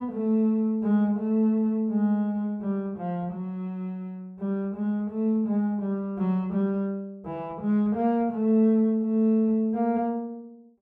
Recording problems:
none

